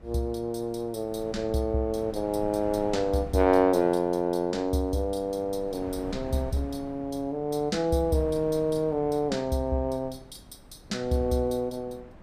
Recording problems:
wind on the microphone; below 350 Hz, SNR 18 dB

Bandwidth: 15 kHz